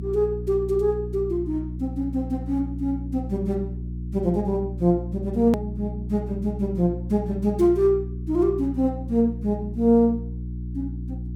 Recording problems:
hum; 60 Hz, harmonics up to 360 Hz, SNR 8 dB
click at an edit; at 5.5 s

